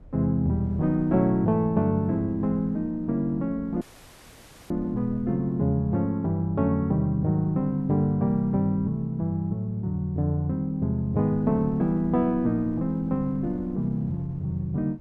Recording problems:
wind noise; below 180 Hz, SNR 20 dB
dropout; at 4 s for 1 s

